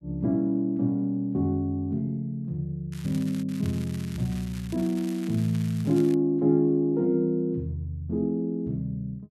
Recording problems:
crackle; at 3 s and from 3.5 to 6 s; loose cable, SNR 20 dB

